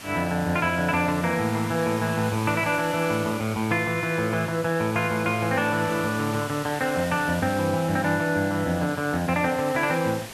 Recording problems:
background hiss; slope -2 dB per octave, SNR 13 dB

